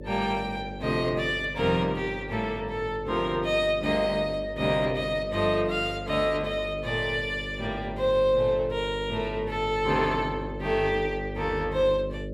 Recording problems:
hum; 50 Hz, harmonics up to 600 Hz, SNR 11 dB

